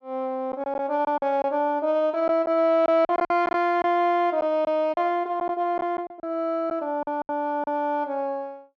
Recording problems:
lost packets; 8% of the sound replaced, filled with silence

